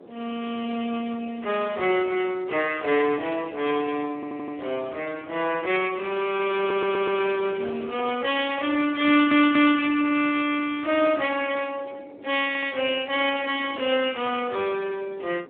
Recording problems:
telephone audio; 320 Hz to 3.5 kHz, Speex
wind on the microphone; below 560 Hz, SNR 20 dB
audio stuttering; 4 times, first at 4 s

